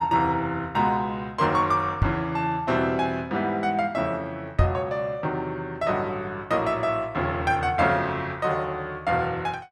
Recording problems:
knock on the microphone; at 2 s and at 4.5 s; peak +7 dB vs average level

